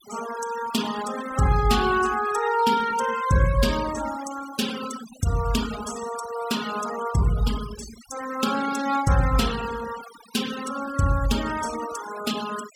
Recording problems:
noise reduction artefacts; signal-to-artefact ratio 12 dB

